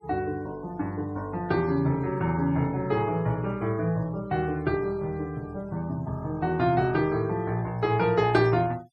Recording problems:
denoising artefacts; signal-to-artefact ratio 26 dB

